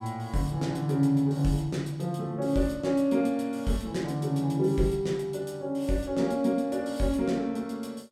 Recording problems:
none

